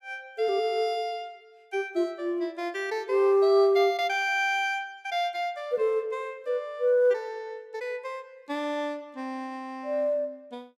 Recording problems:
none

